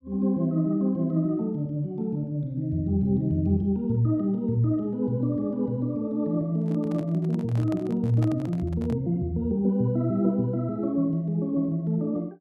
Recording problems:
microphone handling noise; from 6.5 to 9 s; peak -9 dB vs average level

